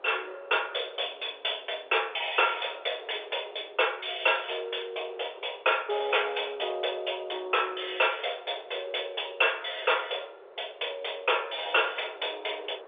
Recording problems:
telephone audio; 340 Hz to 3.6 kHz, G.711
distorted audio; soft clipping, signal-to-distortion ratio 11 dB
wind on the microphone; below 800 Hz, SNR 21 dB

